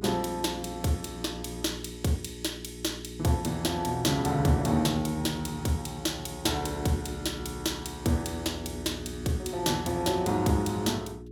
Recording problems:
hum; 60 Hz, harmonics up to 420 Hz, SNR 12 dB

